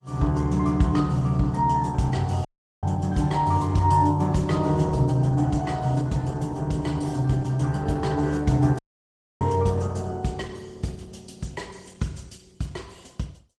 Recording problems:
lossy compression; MP3, then Opus, log-spectral distance 3 dB
dropout; at 2.5 s and at 9 s for 0.5 s

